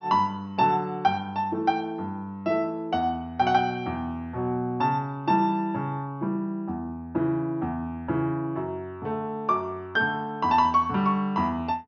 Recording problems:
treble cut off; nothing above 6.3 kHz

